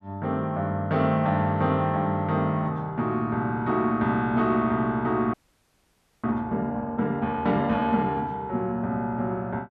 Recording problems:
frozen audio; at 5.5 s for 1 s

